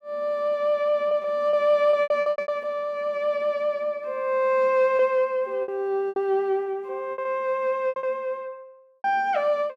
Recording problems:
lost packets; 9% of the sound replaced, filled with repeated pitch periods

